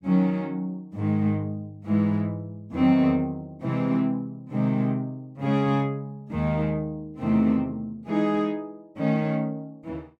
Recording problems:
none

